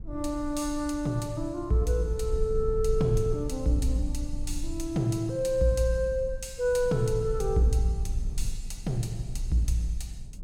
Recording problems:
rumble; below 64 Hz, SNR 8 dB

